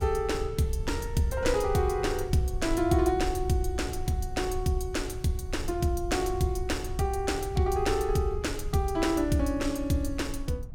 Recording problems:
low-frequency rumble; below 76 Hz, SNR 9 dB

